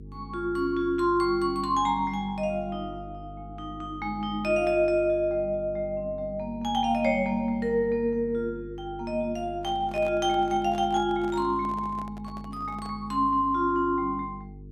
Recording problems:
mains hum; 50 Hz, harmonics up to 450 Hz, SNR 17 dB
microphone handling noise; from 9.5 to 13 s; peak -12 dB vs average level

